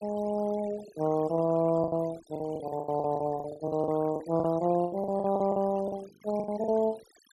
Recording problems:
noise reduction artefacts; signal-to-artefact ratio 20 dB
lost packets; 15% of the sound replaced, filled with the last packet

